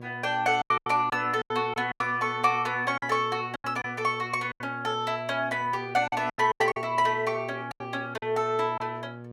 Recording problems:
mains hum; 60 Hz, harmonics up to 1.2 kHz, SNR 16 dB
lost packets; 10% of the sound replaced, filled with silence

